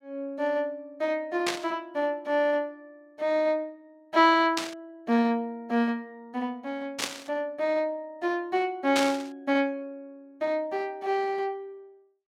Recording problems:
burst of static; 4 times, first at 1.5 s; peak +4 dB vs average level

